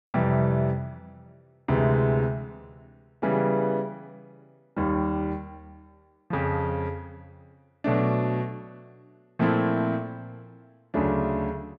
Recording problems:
none

